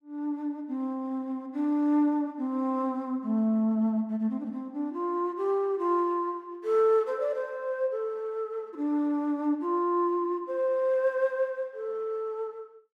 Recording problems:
none

